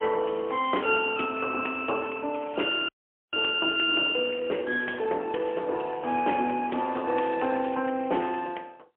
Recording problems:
telephone audio; 280 Hz to 3.2 kHz, AMR-NB, then MP3
frozen audio; at 3 s

